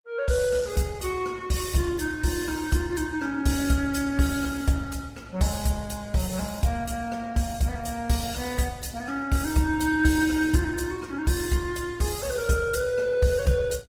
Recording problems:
codec artefacts; Opus, log-spectral distance 5 dB

